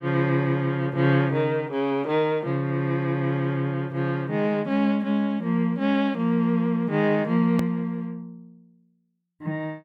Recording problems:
edit click; at 7.5 s

